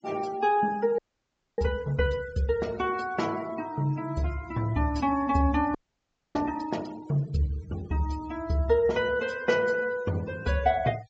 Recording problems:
treble cut off; nothing above 8 kHz
noise reduction artefacts; signal-to-artefact ratio 22 dB
audio freezing; at 1 s for 0.5 s and at 6 s for 0.5 s

